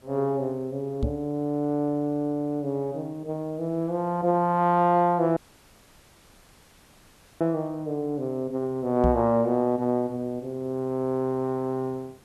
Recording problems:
background hiss; slope -4 dB per octave, SNR 30 dB
knock on the microphone; at 1 s and at 9 s; peak +3 dB vs average level
dropout; at 5.5 s for 2 s

